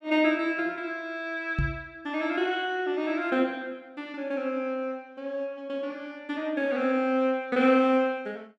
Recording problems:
knock on the microphone; at 1.5 s; peak +3 dB vs average level

